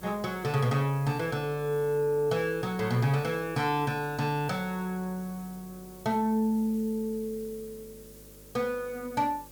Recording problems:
hum; 50 Hz, harmonics up to 600 Hz, SNR 24 dB
background hiss; slope -1 dB per octave, SNR 21 dB

